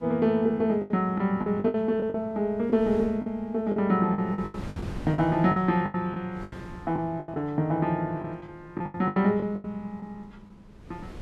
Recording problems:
wind on the microphone; below 340 Hz, SNR 19 dB
lost packets; 13% of the sound replaced, filled with the last packet

